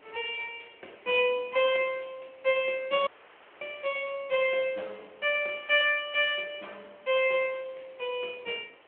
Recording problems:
telephone audio; 340 Hz to 3.3 kHz, Speex
background hiss; SNR 28 dB
dropout; at 3 s for 0.5 s

